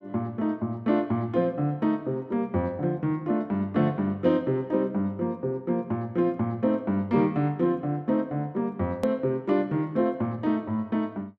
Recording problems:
hard cut with a click; at 9 s

